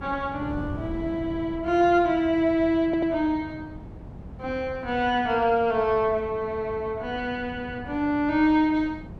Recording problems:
wind noise; below 260 Hz, SNR 15 dB
audio stuttering; at 3 s

